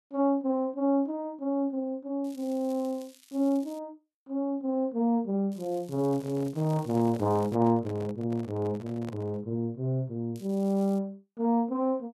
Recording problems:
crackle; from 2 to 4 s, from 5.5 to 7.5 s and at 10 s; loose cable, SNR 25 dB
handling noise; from 6 to 9.5 s; peak -9 dB vs average level

